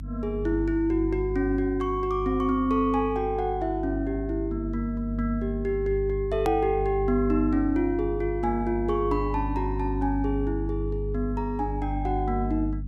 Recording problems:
hum; 50 Hz, harmonics up to 300 Hz, SNR 7 dB
edit click; at 6.5 s

